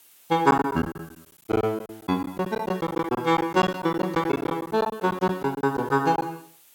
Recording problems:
background hiss; slope +1 dB per octave, SNR 27 dB
lost packets; 14% of the sound replaced, filled with silence

